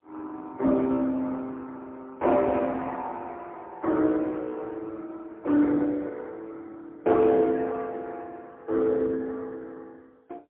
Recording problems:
telephone audio; 220 Hz to 4 kHz, AMR-NB, then MP3

